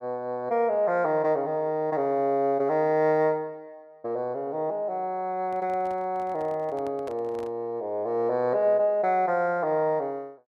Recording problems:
handling noise; from 5.5 to 7.5 s; peak -12 dB vs average level

